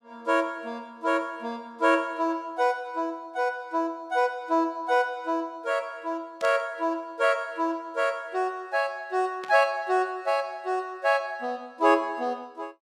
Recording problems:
burst of static; at 6.5 s and at 9.5 s; peak -10 dB vs average level

